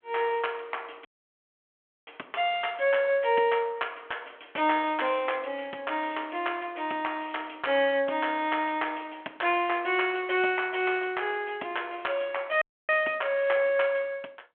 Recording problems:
telephone audio; 240 Hz to 3.4 kHz, G.726
dropout; at 1 s for 1 s and at 13 s

